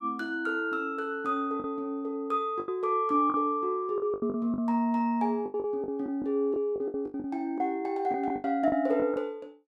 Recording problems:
packet loss; 11% of the sound replaced, filled with the last packet

